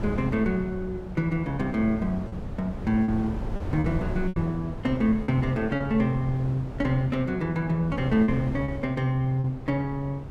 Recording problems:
wind on the microphone; below 230 Hz, SNR 9 dB
lost packets; 4% of the sound replaced, filled with repeated pitch periods

